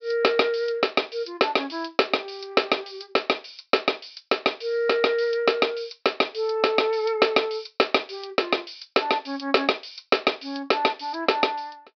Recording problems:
treble cut off; nothing above 5.5 kHz

